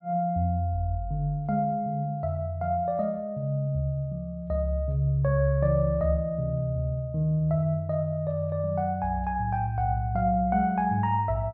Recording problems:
none

